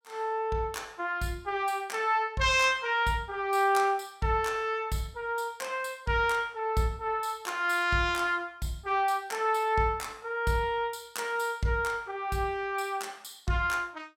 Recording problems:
none

